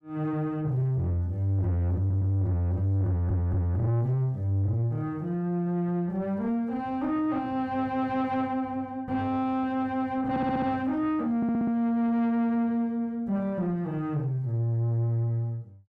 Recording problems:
distorted audio; soft clipping, signal-to-distortion ratio 11 dB
audio stuttering; 4 times, first at 2 s

